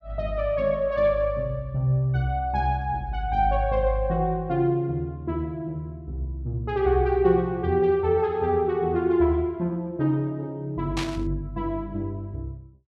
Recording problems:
static burst; at 11 s; peak -2 dB vs average level

